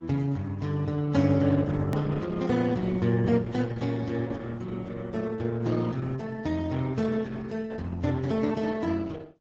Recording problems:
codec artefacts; Vorbis, then Opus, log-spectral distance 3 dB, nothing above 18.9 kHz
click at an edit; at 2 s

